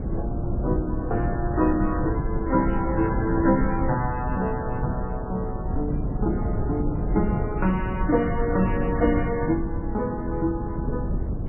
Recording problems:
codec artefacts; MP3, log-spectral distance 2 dB, nothing above 2.9 kHz
wind on the microphone; below 180 Hz, SNR 3 dB

